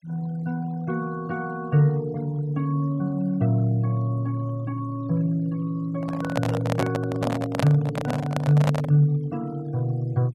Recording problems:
noise reduction artefacts; signal-to-artefact ratio 24 dB
handling noise; from 6 to 9 s; peak +2 dB vs average level

